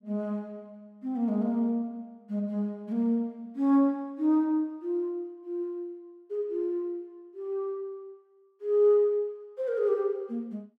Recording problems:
none

